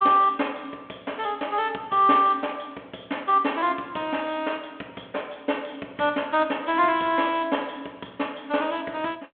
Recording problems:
telephone audio; 280 Hz to 3.4 kHz, G.726

